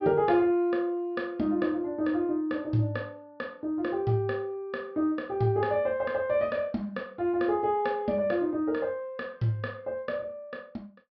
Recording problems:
treble cut off; nothing above 5.5 kHz

